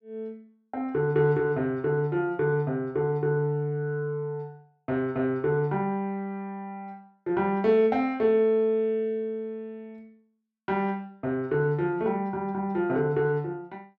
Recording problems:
none

